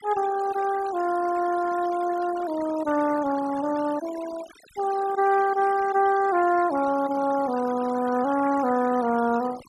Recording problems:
denoising artefacts; signal-to-artefact ratio 16 dB

